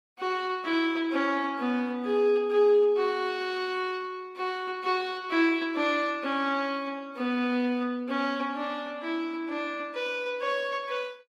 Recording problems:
lossy compression; Opus, log-spectral distance 2 dB

